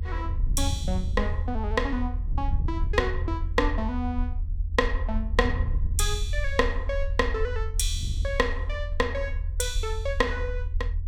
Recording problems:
rumble; below 80 Hz, SNR 2 dB
wind on the microphone; below 88 Hz, SNR 7 dB

